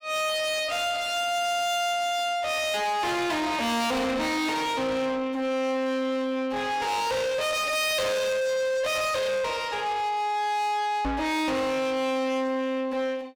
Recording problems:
distortion; soft clipping, signal-to-distortion ratio 7 dB
microphone bump; at 11 s; peak +2 dB vs average level

